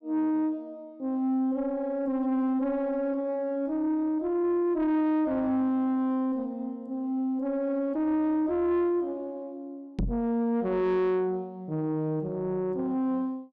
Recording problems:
distorted audio; soft clipping, signal-to-distortion ratio 11 dB
microphone thump; at 10 s; peak +2 dB vs average level

